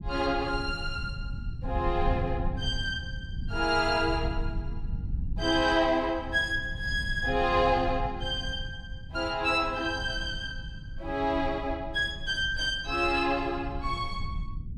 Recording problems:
rumble; below 100 Hz, SNR 9 dB

